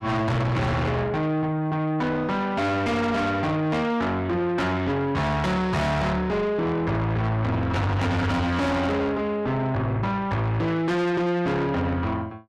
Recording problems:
distorted audio; soft clipping, signal-to-distortion ratio 6 dB

